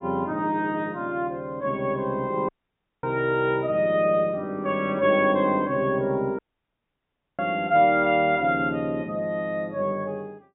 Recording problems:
treble missing; nothing above 4 kHz
audio cutting out; at 2.5 s for 0.5 s and at 6.5 s for 1 s

